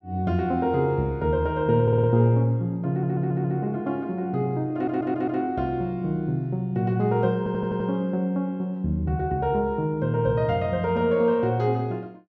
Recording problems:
audio stuttering; 4 times, first at 2 s

